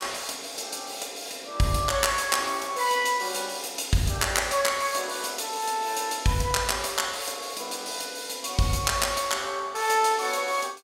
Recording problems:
none

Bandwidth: 16 kHz